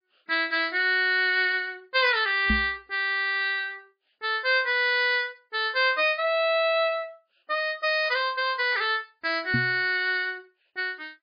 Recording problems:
codec artefacts; MP3, log-spectral distance 3 dB, nothing above 4.8 kHz
microphone bump; at 2.5 s and at 9.5 s; peak +1 dB vs average level

